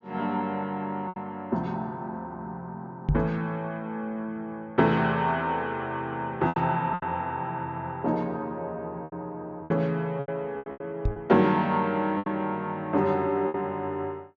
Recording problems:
treble cut off; nothing above 7.2 kHz
lost packets; 6% of the sound replaced, filled with repeated pitch periods
microphone thump; at 3 s and at 11 s; peak +7 dB vs average level

